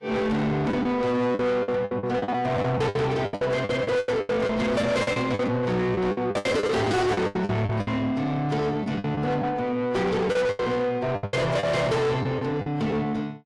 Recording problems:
codec artefacts; AAC, log-spectral distance 2 dB, nothing above 11.3 kHz
distortion; soft clipping, signal-to-distortion ratio 6 dB
lost packets; 14% of the sound replaced, filled with the last packet

